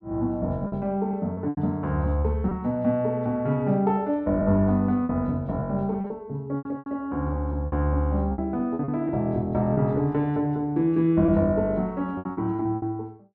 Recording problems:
lost packets; 8% of the sound replaced, filled with repeated pitch periods

